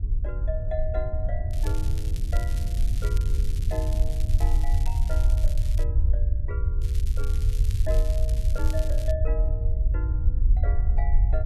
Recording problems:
low-frequency rumble; below 66 Hz, SNR -11 dB
wind on the microphone; below 96 Hz, SNR -1 dB
crackle; from 1.5 to 6 s and from 7 to 9 s; loose cable, SNR 8 dB

